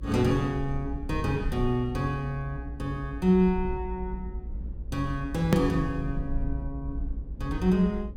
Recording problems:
hum; 50 Hz, harmonics up to 550 Hz, SNR 20 dB
low-frequency rumble; below 62 Hz, SNR 9 dB
click at an edit; at 5.5 s

